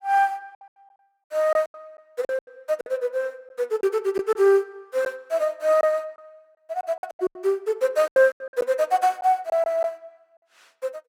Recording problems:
packet loss; 11% of the sound replaced, filled with silence

